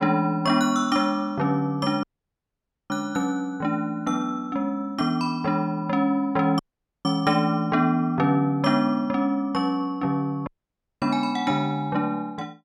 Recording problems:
audio cutting out; at 2 s for 1 s, at 6.5 s and at 10 s for 0.5 s

